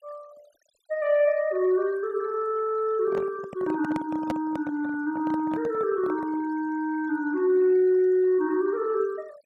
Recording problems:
noise reduction artefacts; signal-to-artefact ratio 25 dB
microphone handling noise; from 3 to 6.5 s; peak -2 dB vs average level

